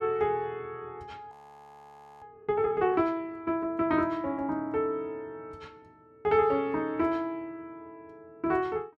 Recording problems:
audio freezing; at 1.5 s for 1 s

